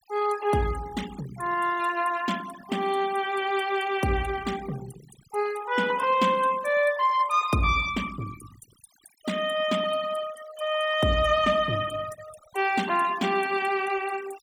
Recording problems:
noise reduction artefacts; signal-to-artefact ratio 17 dB

